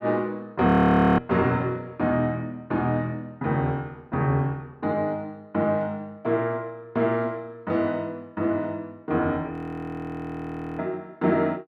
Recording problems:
audio freezing; at 0.5 s for 0.5 s and at 9.5 s for 1.5 s

